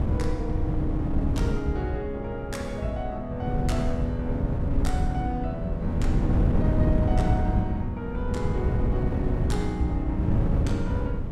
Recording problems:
wind on the microphone; below 160 Hz, SNR -3 dB

